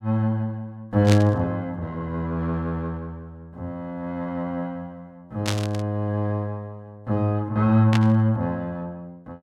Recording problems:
burst of static; at 1 s, at 5.5 s and at 8 s; peak +1 dB vs average level

